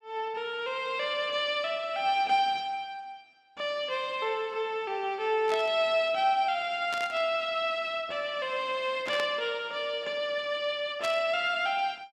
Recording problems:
burst of static; 4 times, first at 5.5 s; peak -3 dB vs average level

